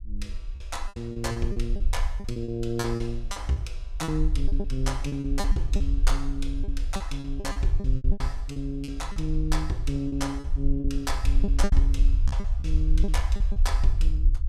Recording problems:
low-frequency rumble; below 52 Hz, SNR -3 dB
lost packets; 13% of the sound replaced, filled with repeated pitch periods

